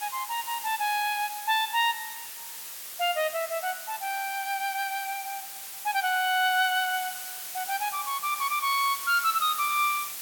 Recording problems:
background hiss; slope +2 dB per octave, SNR 8 dB

